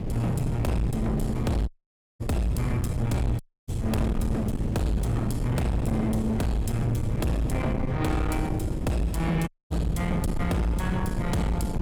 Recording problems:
distortion; soft clipping, signal-to-distortion ratio 8 dB
rumble; below 100 Hz, SNR 10 dB
wind on the microphone; below 220 Hz, SNR 4 dB
audio cutting out; at 1.5 s for 0.5 s, at 3.5 s and at 9.5 s

